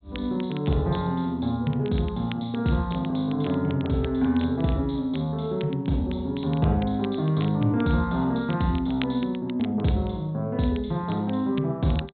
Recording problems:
treble cut off; nothing above 4 kHz
crackle; vinyl, SNR 20 dB

